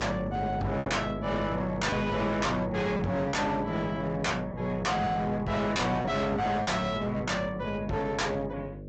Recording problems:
treble missing; nothing above 7.6 kHz
lossy codec; Opus, log-spectral distance 2 dB
distorted audio; hard clipping, signal-to-distortion ratio 6 dB
hum; 50 Hz, harmonics up to 600 Hz, SNR 11 dB
lost packets; 3% of the sound replaced, filled with repeated pitch periods

